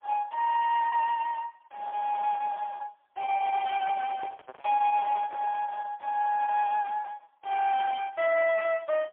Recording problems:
telephone audio; 410 Hz to 3.1 kHz, AMR-NB, then MP3
distorted audio; soft clipping, signal-to-distortion ratio 11 dB
packet loss; 8% of the sound replaced, filled with repeated pitch periods
handling noise; from 3.5 to 5.5 s; peak -12 dB vs average level

